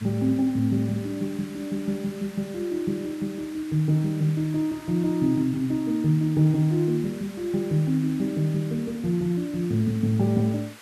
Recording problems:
hiss; SNR 20 dB

